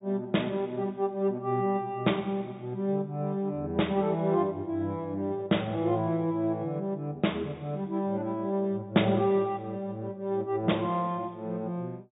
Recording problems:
treble cut off; nothing above 4 kHz

